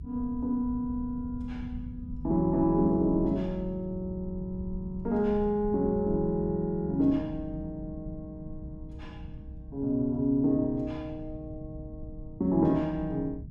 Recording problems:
low-frequency rumble; below 140 Hz, SNR 13 dB

